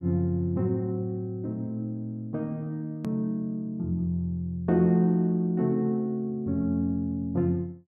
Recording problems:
edit click; at 3 s

